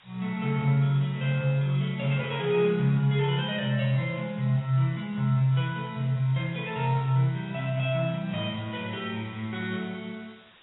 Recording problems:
codec artefacts; AAC, log-spectral distance 6 dB, nothing above 3.4 kHz
background hiss; SNR 27 dB

